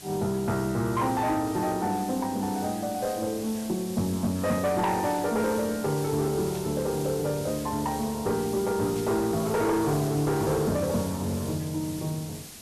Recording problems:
distortion; soft clipping, signal-to-distortion ratio 12 dB
background hiss; SNR 13 dB
static burst; at 5 s, at 6.5 s and at 9 s; peak -14 dB vs average level

